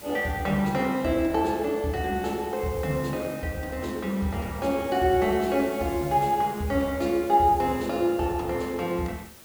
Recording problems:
hiss; slope -2 dB per octave, SNR 19 dB

